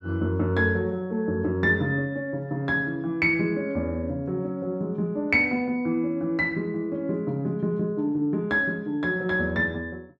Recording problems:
none

